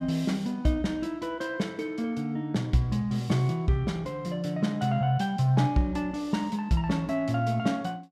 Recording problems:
none

